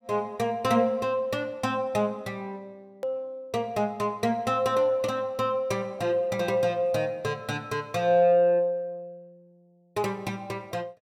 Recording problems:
hard cut with a click; at 3 s

